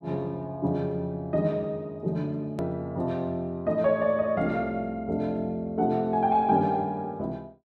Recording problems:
hard cut with a click; at 2.5 s

